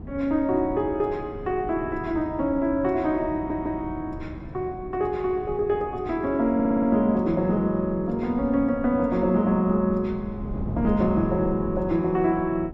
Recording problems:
wind noise; below 230 Hz, SNR 13 dB
stutter; at 3.5 s and at 6.5 s

